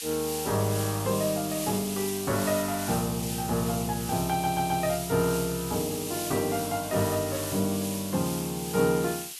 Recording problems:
background hiss; SNR 6 dB
audio stuttering; at 4.5 s

